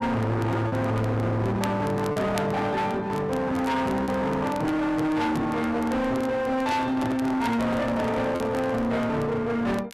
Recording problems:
distortion; hard clipping, uneven, signal-to-distortion ratio 6 dB
crackle; vinyl, SNR 22 dB
lost packets; 1.6% of the sound replaced, filled with repeated pitch periods
microphone handling noise; from 6.5 to 9 s; peak -1 dB vs average level

